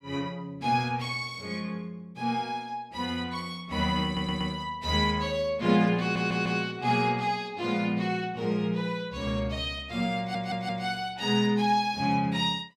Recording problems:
stutter; at 4 s, at 6 s and at 10 s

